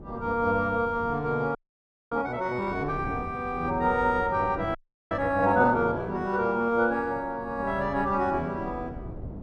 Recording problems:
wind noise; below 300 Hz, SNR 15 dB
audio freezing; at 1.5 s for 0.5 s and at 5 s

